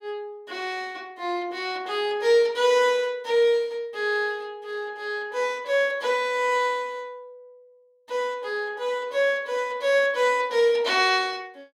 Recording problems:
none

